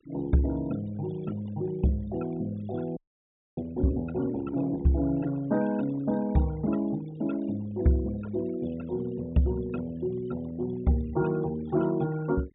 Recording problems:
treble missing; nothing above 4 kHz
noise reduction artefacts; signal-to-artefact ratio 20 dB
frozen audio; at 3 s for 0.5 s

